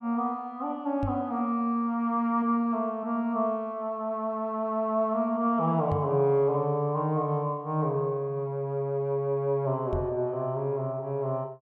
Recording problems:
microphone thump; at 1 s, at 6 s and at 10 s; peak -1 dB vs average level

